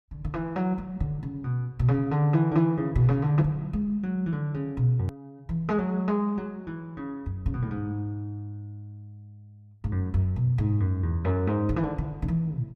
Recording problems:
hard cut with a click; at 5 s

